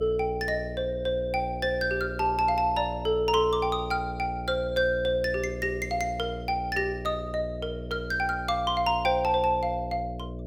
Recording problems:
hum; 60 Hz, harmonics up to 660 Hz, SNR 10 dB

